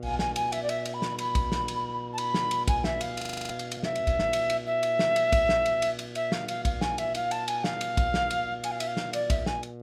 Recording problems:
hum; 60 Hz, harmonics up to 1.2 kHz, SNR 13 dB
audio freezing; at 3 s

